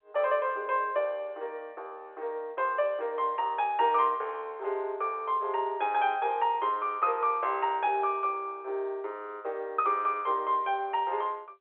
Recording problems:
telephone audio; 340 Hz to 3.6 kHz, G.711

